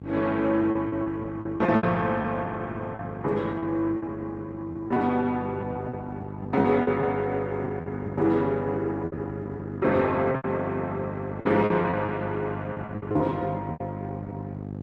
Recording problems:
lossy compression; Opus, log-spectral distance 2 dB
hum; 50 Hz, harmonics up to 850 Hz, SNR 8 dB
packet loss; 10% of the sound replaced, filled with repeated pitch periods

